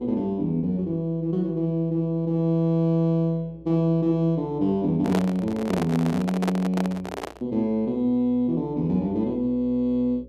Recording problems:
hum; 60 Hz, harmonics up to 540 Hz, SNR 27 dB
handling noise; from 5 to 7.5 s; peak 0 dB vs average level

